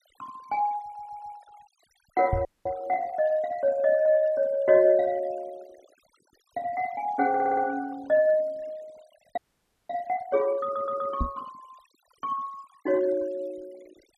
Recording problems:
denoising artefacts; signal-to-artefact ratio 25 dB
audio stuttering; at 1 s, at 7.5 s and at 11 s
microphone thump; at 2.5 s and at 11 s; peak +1 dB vs average level
audio freezing; at 2.5 s and at 9.5 s for 0.5 s

